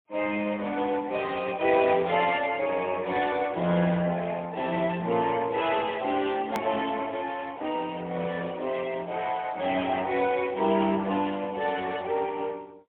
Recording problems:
telephone audio; 240 Hz to 3.5 kHz, AMR-NB, then MP3
hard cut with a click; at 6.5 s

